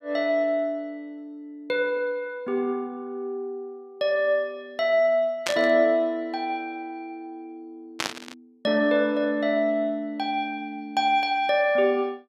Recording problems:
static burst; at 5.5 s and at 8 s; peak +2 dB vs average level

